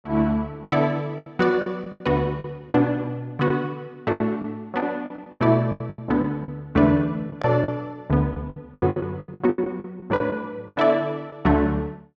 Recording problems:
packet loss; 14% of the sound replaced, filled with the last packet

